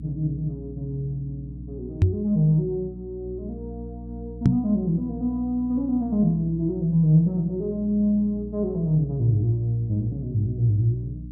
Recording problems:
hum; 60 Hz, harmonics up to 300 Hz, SNR 14 dB
microphone bump; at 2 s and at 4.5 s; peak +10 dB vs average level

